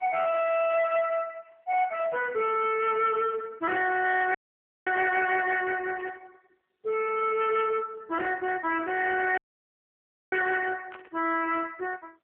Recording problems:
phone line; 450 Hz to 3.3 kHz, AMR-NB
distorted audio; soft clipping, signal-to-distortion ratio 10 dB
dropout; at 4.5 s for 0.5 s and at 9.5 s for 1 s
burst of static; at 6 s and at 11 s; peak -14 dB vs average level

